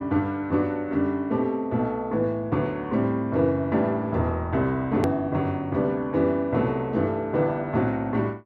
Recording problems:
hard cut with a click; at 5 s

